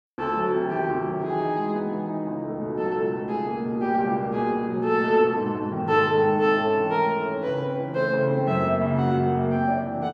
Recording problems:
none

